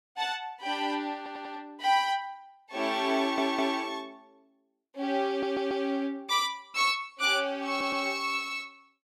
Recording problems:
stutter; 4 times, first at 1 s

